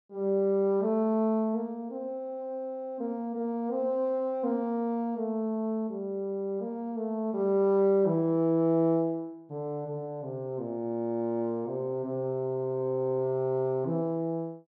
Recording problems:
none

